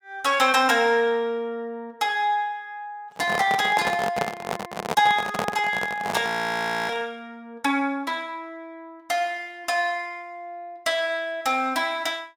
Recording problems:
handling noise; from 3 to 7 s; peak +2 dB vs average level
audio freezing; at 6.5 s for 0.5 s

